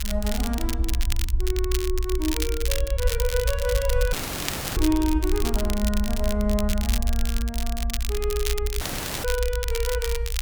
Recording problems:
rumble; below 60 Hz, strongest tone 22 Hz, SNR 0 dB
crackling; vinyl, SNR 4 dB
dropout; at 4 s for 0.5 s and at 9 s

